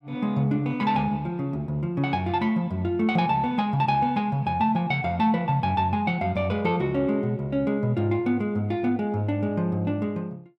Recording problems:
none

